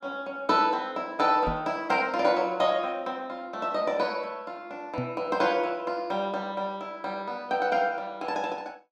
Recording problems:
microphone bump; at 1.5 s and at 5 s; peak -2 dB vs average level

